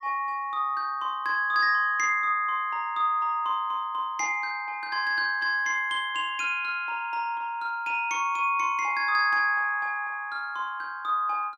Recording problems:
none

